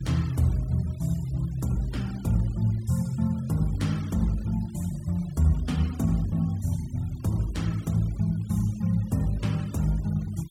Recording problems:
noise reduction artefacts; signal-to-artefact ratio 22 dB

